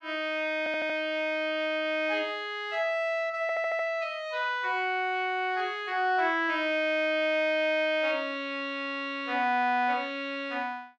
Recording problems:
audio stuttering; at 0.5 s and at 3.5 s

